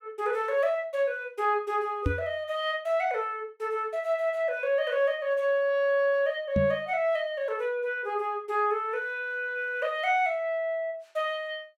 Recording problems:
microphone bump; at 2 s and at 6.5 s; peak +4 dB vs average level

